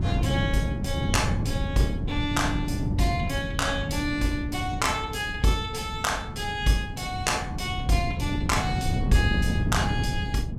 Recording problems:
wind noise; below 190 Hz, SNR 2 dB

